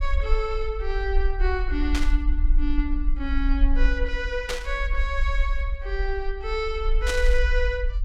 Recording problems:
rumble; below 48 Hz, strongest tone 26 Hz, SNR -2 dB
static burst; at 2 s, at 4.5 s and at 7 s; peak +4 dB vs average level

